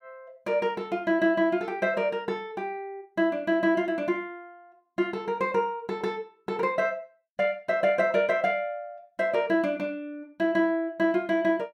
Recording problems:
none

